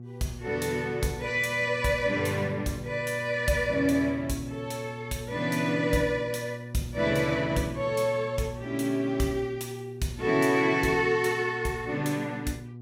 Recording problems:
hum; 60 Hz, harmonics up to 480 Hz, SNR 13 dB

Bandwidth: 16 kHz